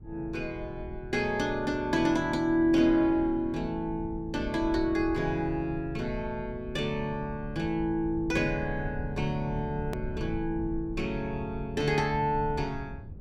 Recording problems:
low-frequency rumble; below 110 Hz, SNR 12 dB
hard cut with a click; at 10 s

